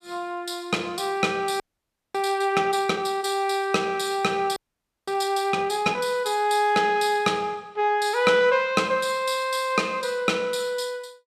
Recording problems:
audio freezing; at 1.5 s for 0.5 s and at 4.5 s for 0.5 s

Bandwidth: 14.5 kHz